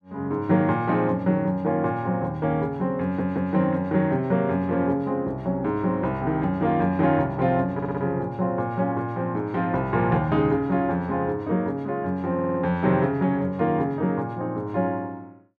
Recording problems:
stutter; at 3 s, at 7.5 s and at 12 s

